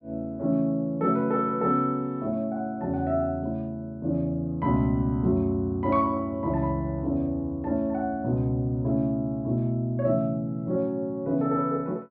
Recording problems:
treble missing; nothing above 5.5 kHz

